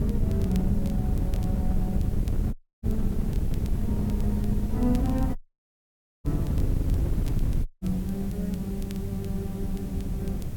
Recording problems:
hiss; SNR 18 dB
wind noise; below 130 Hz, SNR -3 dB
crackle; vinyl, SNR 21 dB
audio cutting out; at 2.5 s, at 5.5 s for 1 s and at 7.5 s

